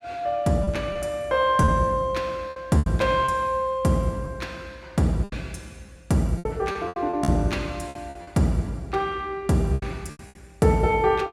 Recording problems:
lost packets; 9% of the sound replaced, filled with repeated pitch periods

